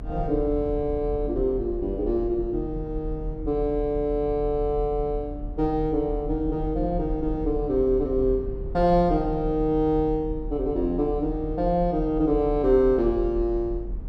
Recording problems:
low-frequency rumble; below 54 Hz, strongest tone 42 Hz, SNR 10 dB

